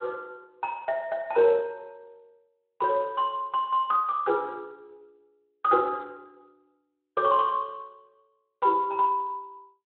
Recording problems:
phone line; 340 Hz to 3.6 kHz, Speex

